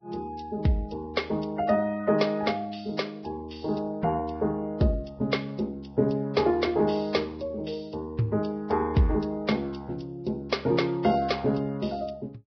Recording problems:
lossy compression; Vorbis, log-spectral distance 4 dB, nothing above 5.5 kHz

